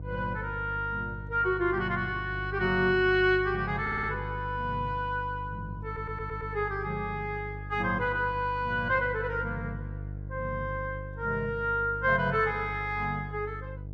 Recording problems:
hum; 50 Hz, harmonics up to 500 Hz, SNR 10 dB
stutter; at 4 s and at 6 s

